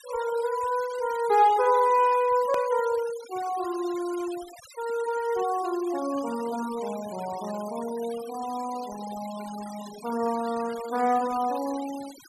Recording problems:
denoising artefacts; signal-to-artefact ratio 17 dB
edit click; at 2.5 s

